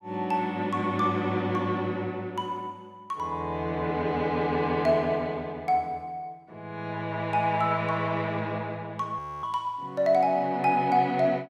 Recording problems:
audio freezing; at 9 s

